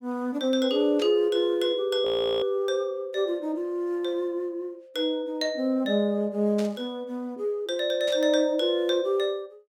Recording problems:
burst of static; at 1 s, at 6.5 s and at 8 s; peak -9 dB vs average level
frozen audio; at 2 s

